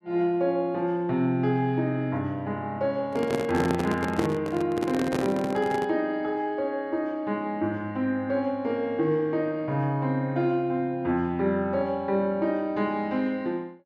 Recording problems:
microphone handling noise; from 3 to 6 s; peak +2 dB vs average level

